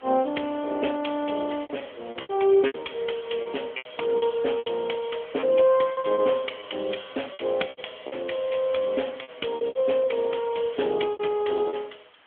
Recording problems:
telephone audio; 240 Hz to 3.4 kHz, AMR-NB
hiss; SNR 29 dB
lost packets; 12% of the sound replaced, filled with repeated pitch periods

